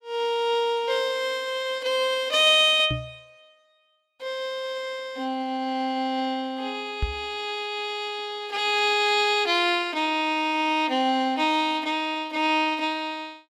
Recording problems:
knock on the microphone; at 3 s and at 7 s; peak 0 dB vs average level

